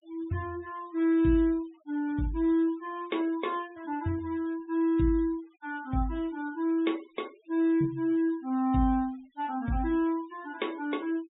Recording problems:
treble missing; nothing above 4 kHz
noise reduction artefacts; signal-to-artefact ratio 26 dB

